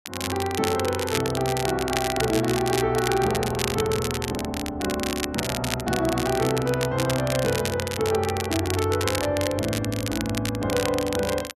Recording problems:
crackle; vinyl, SNR 6 dB

